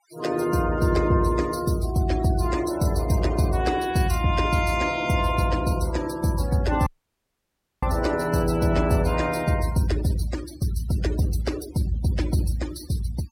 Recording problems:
noise reduction artefacts; signal-to-artefact ratio 17 dB
audio cutting out; at 7 s for 1 s

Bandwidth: 16 kHz